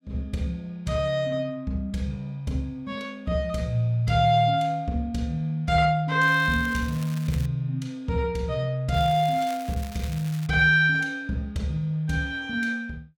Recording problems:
crackle; from 6 to 7.5 s and from 9 to 10 s; loose cable, SNR 19 dB

